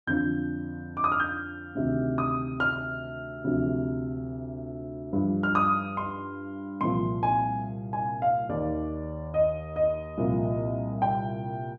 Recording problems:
none

